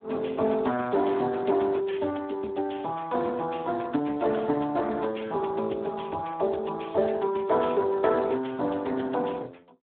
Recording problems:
phone line; 260 Hz to 3.5 kHz, Speex

